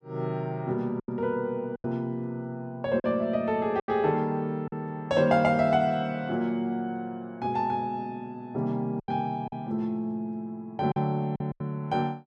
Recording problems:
lost packets; 5% of the sound replaced, filled with silence

